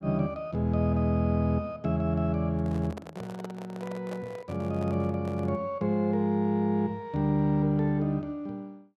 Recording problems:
handling noise; from 2.5 to 5.5 s; peak -8 dB vs average level

